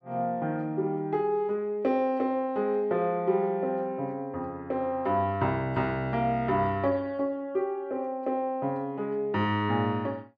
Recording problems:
none

